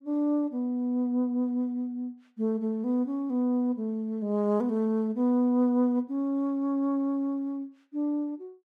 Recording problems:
none

